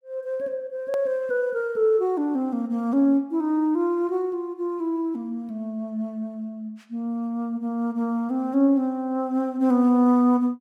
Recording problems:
hard cut with a click; at 1 s

